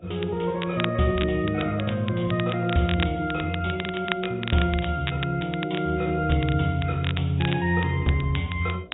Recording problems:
low-pass filter; nothing above 3.8 kHz
lossy compression; Vorbis, log-spectral distance 3 dB
electrical hum; 60 Hz, harmonics up to 720 Hz, SNR 29 dB
crackle; vinyl, SNR 11 dB

